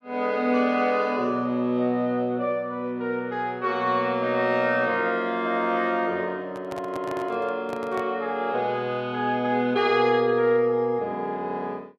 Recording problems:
handling noise; from 6.5 to 8 s; peak -8 dB vs average level

